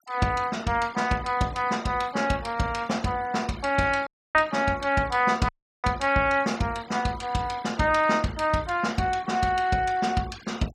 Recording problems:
denoising artefacts; signal-to-artefact ratio 22 dB
dropout; at 4 s and at 5.5 s

